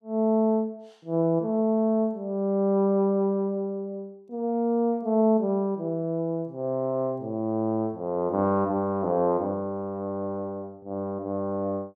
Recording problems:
none

